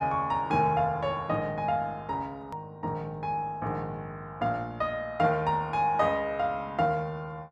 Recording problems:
hard cut with a click; at 2.5 s

